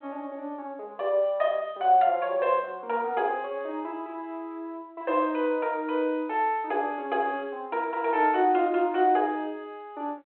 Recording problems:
phone line; 340 Hz to 3.3 kHz, G.726

